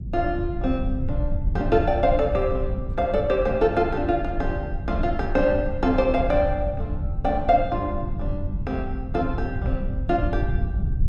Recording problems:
low-frequency rumble; below 96 Hz, SNR 5 dB

